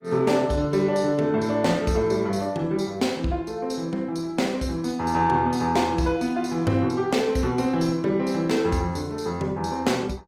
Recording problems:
codec artefacts; Opus, log-spectral distance 3 dB, nothing above 19 kHz

